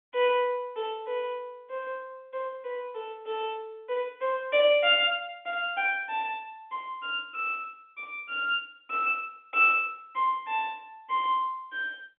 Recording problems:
telephone audio; 220 Hz to 3.5 kHz, G.711

